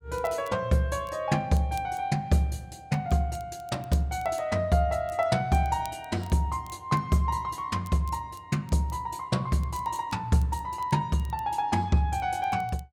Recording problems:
crackling; vinyl, SNR 26 dB

